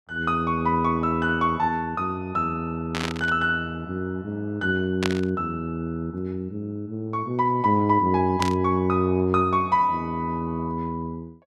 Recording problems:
static burst; at 3 s, at 5 s and at 8.5 s; peak +2 dB vs average level

